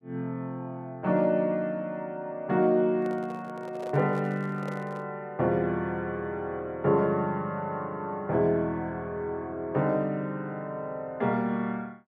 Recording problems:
handling noise; from 3 to 5 s; peak -6 dB vs average level

